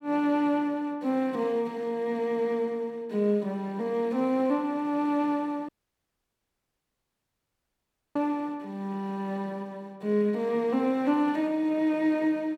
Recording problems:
audio cutting out; at 5.5 s for 2.5 s

